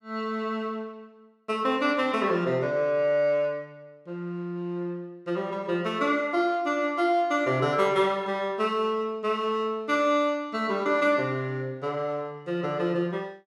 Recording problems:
none

